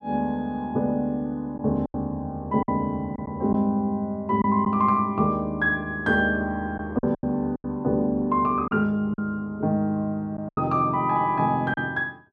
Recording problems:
packet loss; 5% of the sound replaced, filled with silence

